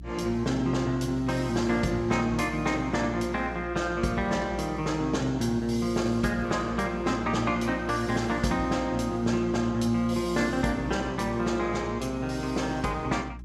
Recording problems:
hum; 60 Hz, harmonics up to 360 Hz, SNR 14 dB

